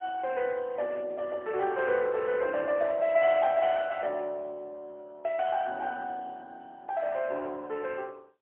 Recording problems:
telephone audio; 320 Hz to 3.3 kHz, AMR-NB, then MP3

